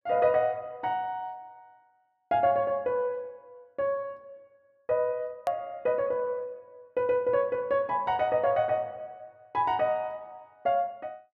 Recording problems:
edit click; at 5.5 s

